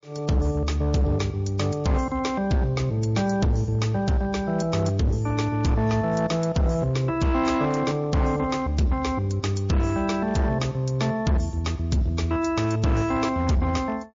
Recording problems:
lossy codec; MP3, log-spectral distance 2 dB
distortion; hard clipping, signal-to-distortion ratio 12 dB

